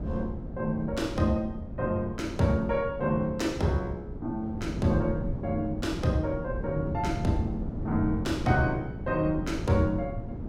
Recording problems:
hum; 60 Hz, harmonics up to 900 Hz, SNR 22 dB
wind on the microphone; below 220 Hz, SNR 7 dB

